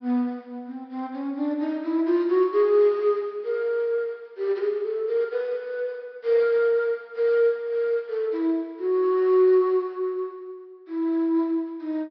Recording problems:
low-pass filter; nothing above 5.5 kHz

